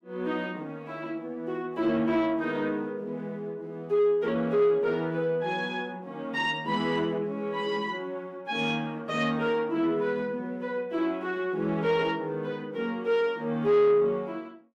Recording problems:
distorted audio; soft clipping, signal-to-distortion ratio 11 dB

